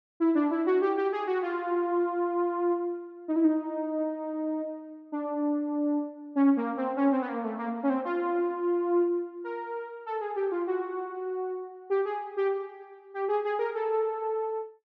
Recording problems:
none

